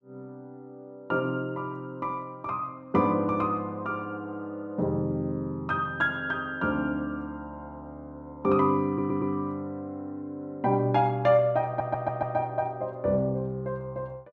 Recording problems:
stutter; at 9 s and at 12 s

